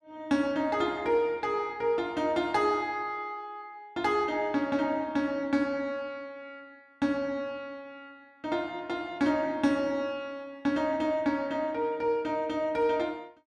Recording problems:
none

